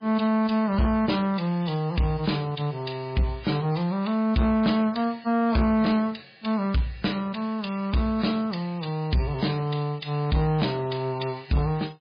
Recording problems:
codec artefacts; MP3, log-spectral distance 4 dB, nothing above 4.1 kHz
distortion; soft clipping, signal-to-distortion ratio 11 dB

